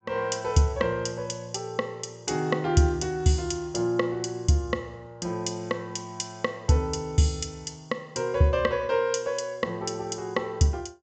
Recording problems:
treble missing; nothing above 8 kHz

